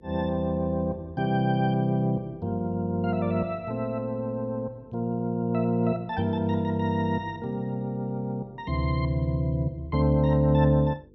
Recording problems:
hum; 50 Hz, harmonics up to 500 Hz, SNR 26 dB

